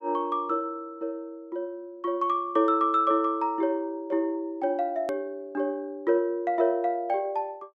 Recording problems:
hard cut with a click; at 5 s

